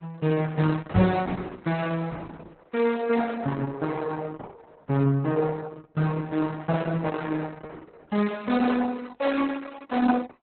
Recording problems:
lossy compression; Vorbis, then Opus, log-spectral distance 4 dB, nothing above 4 kHz
microphone thump; at 1 s; peak +7 dB vs average level

